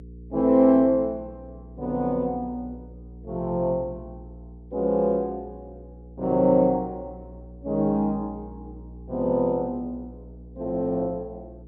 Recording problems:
electrical hum; 60 Hz, harmonics up to 480 Hz, SNR 19 dB

